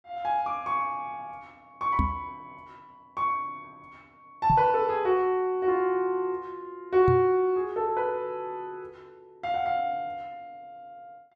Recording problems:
microphone thump; at 2 s, at 4.5 s and at 7 s; peak +4 dB vs average level

